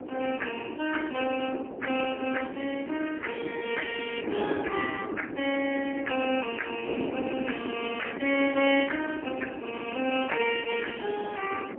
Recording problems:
phone line; 220 Hz to 3 kHz, AMR-NB, then MP3
wind noise; below 470 Hz, SNR 6 dB

